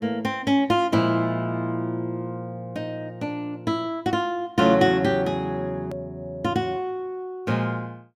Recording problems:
hard cut with a click; at 6 s

